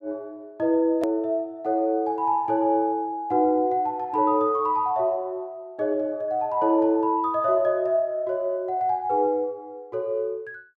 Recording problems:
click at an edit; at 1 s

